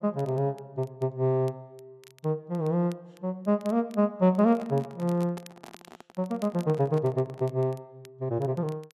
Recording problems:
crackle; vinyl, SNR 28 dB
microphone handling noise; from 4.5 to 7.5 s; peak -11 dB vs average level

